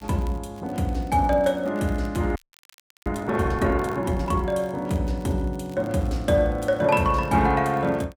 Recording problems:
crackling; vinyl, SNR 30 dB
frozen audio; at 2.5 s for 0.5 s

